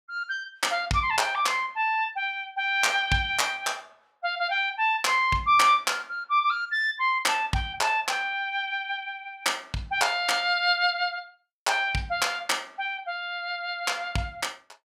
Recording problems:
none

